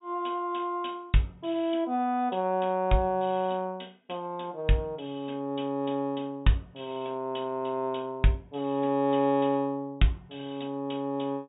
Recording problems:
low-pass filter; nothing above 4 kHz

